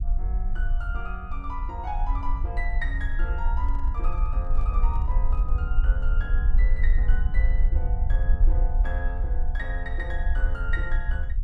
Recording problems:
rumble; below 50 Hz, strongest tone 26 Hz, SNR -10 dB
handling noise; from 3.5 to 5.5 s; peak -12 dB vs average level

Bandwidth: 12 kHz